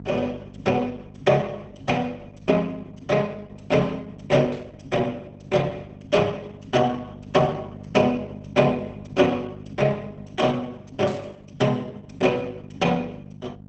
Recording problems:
lossy codec; Opus, log-spectral distance 3 dB
mains hum; 50 Hz, harmonics up to 750 Hz, SNR 17 dB
burst of static; at 4.5 s, at 8 s and at 11 s; peak -16 dB vs average level

